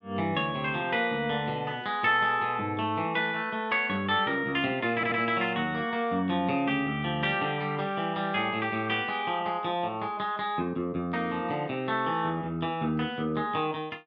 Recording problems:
stutter; at 5 s

